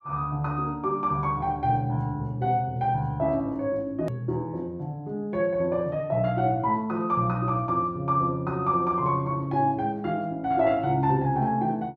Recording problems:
edit click; at 4 s

